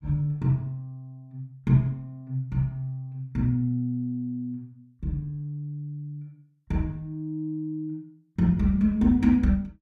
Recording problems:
none

